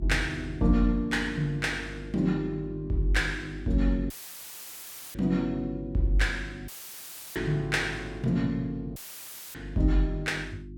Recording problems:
hum; 50 Hz, harmonics up to 350 Hz, SNR 13 dB
dropout; at 4 s for 1 s, at 6.5 s for 0.5 s and at 9 s for 0.5 s; filled with static

